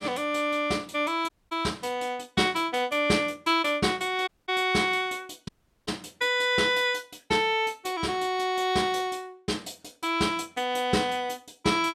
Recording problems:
dropout; at 1.5 s, at 4.5 s and at 5.5 s

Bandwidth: 16.5 kHz